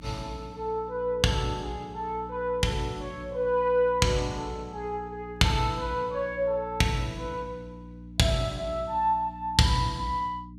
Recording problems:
electrical hum; 60 Hz, harmonics up to 300 Hz, SNR 16 dB

